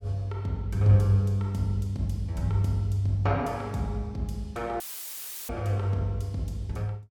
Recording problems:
dropout; at 5 s for 0.5 s; filled with static

